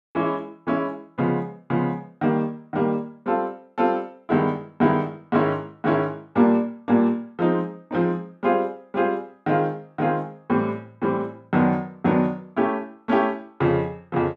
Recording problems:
none

